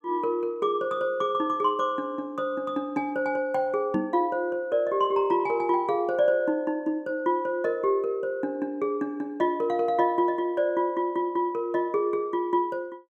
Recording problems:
microphone bump; at 4 s; peak -1 dB vs average level

